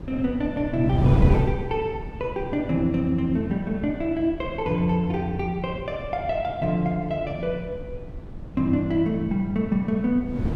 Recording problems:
wind noise; below 190 Hz, SNR 7 dB

